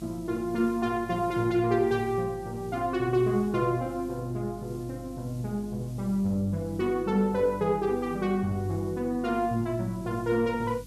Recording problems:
electrical hum; 50 Hz, harmonics up to 300 Hz, SNR 19 dB
hiss; slope +3 dB per octave, SNR 26 dB

